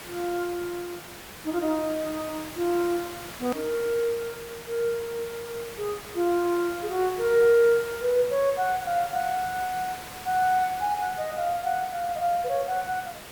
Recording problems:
background hiss; slope -3 dB per octave, SNR 13 dB
edit click; at 3.5 s

